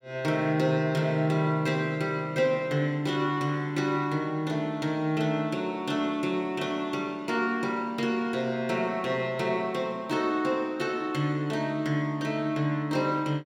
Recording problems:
none

